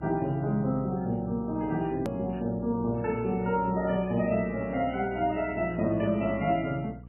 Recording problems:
codec artefacts; MP3, log-spectral distance 2 dB, nothing above 13.1 kHz
hum; 60 Hz, harmonics up to 540 Hz, SNR 16 dB
hard cut with a click; at 2 s

